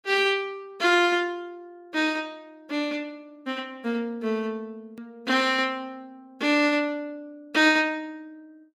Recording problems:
edit click; at 5 s

